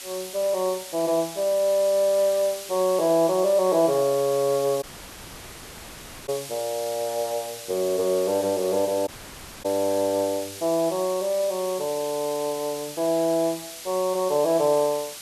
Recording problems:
hiss; slope +2 dB per octave, SNR 12 dB
dropout; at 5 s for 1.5 s and at 9 s for 0.5 s

